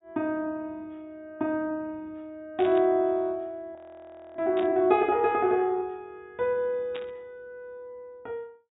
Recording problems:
low-pass filter; nothing above 4 kHz
burst of static; at 2.5 s, at 4.5 s and at 7 s; peak -9 dB vs average level
frozen audio; at 4 s for 0.5 s

